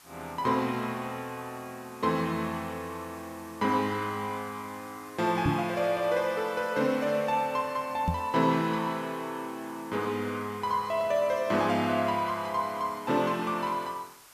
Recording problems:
background hiss; SNR 22 dB
knock on the microphone; at 5.5 s and at 8 s; peak +5 dB vs average level

